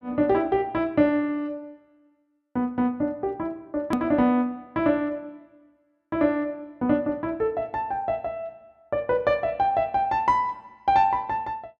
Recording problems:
click at an edit; at 4 s

